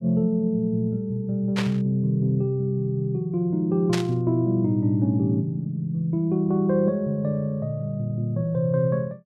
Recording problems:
burst of static; at 1.5 s and at 4 s; peak -1 dB vs average level

